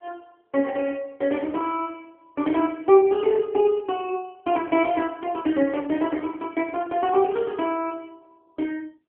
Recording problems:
phone line; 240 Hz to 3.2 kHz, AMR-NB

